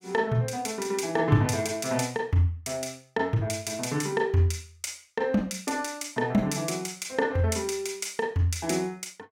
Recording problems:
none

